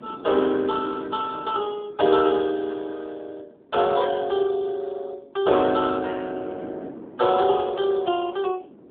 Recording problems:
phone line; 280 Hz to 2.1 kHz, AMR-NB
wind noise; below 440 Hz, SNR 19 dB

